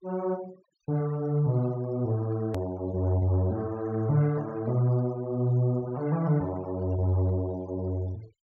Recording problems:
low-pass filter; nothing above 7.1 kHz
noise reduction artefacts; signal-to-artefact ratio 22 dB
edit click; at 2.5 s

